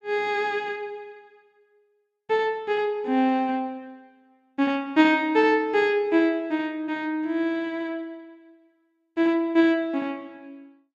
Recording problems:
none

